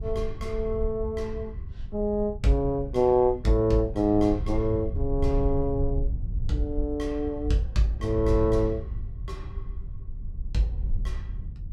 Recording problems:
wind on the microphone; below 76 Hz, SNR 7 dB

